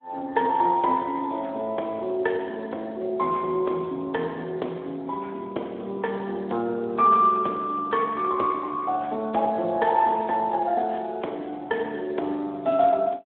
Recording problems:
phone line; 280 Hz to 3.7 kHz, Speex

